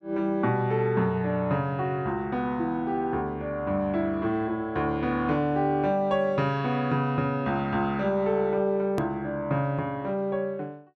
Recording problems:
click at an edit; at 9 s

